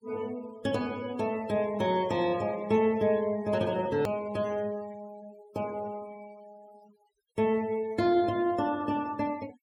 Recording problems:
denoising artefacts; signal-to-artefact ratio 22 dB
edit click; at 4 s

